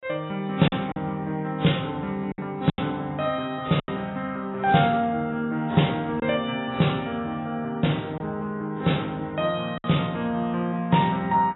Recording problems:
codec artefacts; AAC, log-spectral distance 3 dB, nothing above 3.9 kHz
lost packets; 3% of the sound replaced, filled with silence

